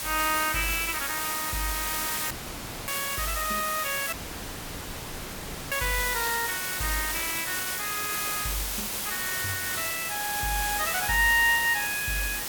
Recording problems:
hiss; slope -1 dB per octave, SNR 1 dB
dropout; at 2.5 s for 0.5 s and at 4 s for 1.5 s

